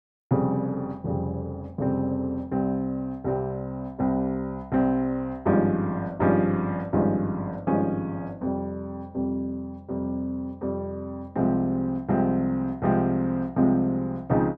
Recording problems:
none

